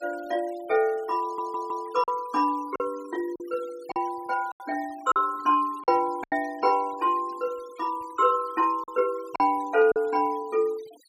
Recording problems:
denoising artefacts; signal-to-artefact ratio 23 dB
packet loss; 5% of the sound replaced, filled with silence
stutter; at 1 s

